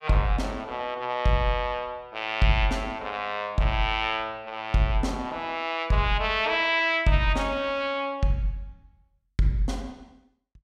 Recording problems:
none

